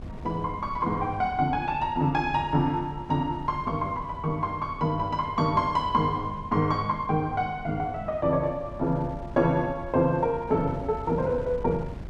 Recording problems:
wind noise; below 180 Hz, SNR 15 dB

